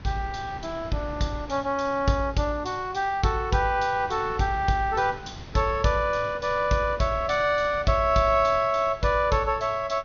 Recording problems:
treble missing; nothing above 6.5 kHz
wind on the microphone; below 550 Hz, SNR 19 dB

